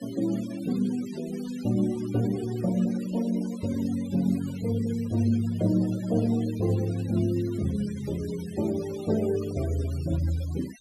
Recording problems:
denoising artefacts; signal-to-artefact ratio 19 dB

